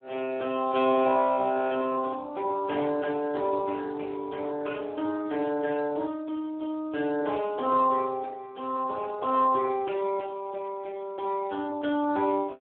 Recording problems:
phone line; 240 Hz to 2.7 kHz, Speex

